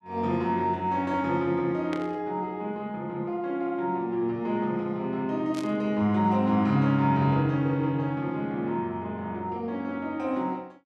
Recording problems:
static burst; at 2 s and at 5.5 s; peak -8 dB vs average level

